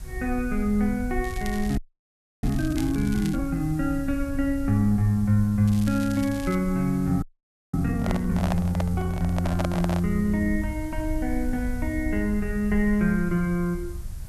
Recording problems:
background hiss; SNR 24 dB
low-frequency rumble; below 72 Hz, SNR 10 dB
crackling; from 1 to 3.5 s and at 5.5 s; loose cable, SNR 18 dB
frozen audio; at 2 s for 0.5 s and at 7 s for 0.5 s
handling noise; from 8 to 10 s; peak 0 dB vs average level

